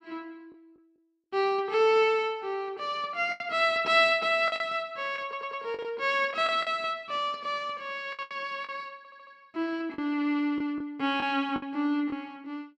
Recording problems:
lost packets; 6% of the sound replaced, filled with the last packet
stutter; at 5 s and at 9 s

